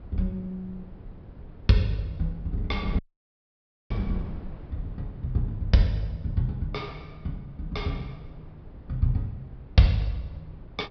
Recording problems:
treble cut off; nothing above 5.5 kHz
wind on the microphone; below 160 Hz, SNR 14 dB
dropout; at 3 s for 1 s

